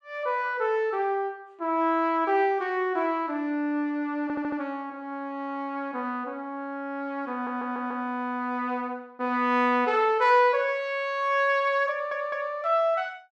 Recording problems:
stutter; at 4 s, at 7.5 s and at 12 s

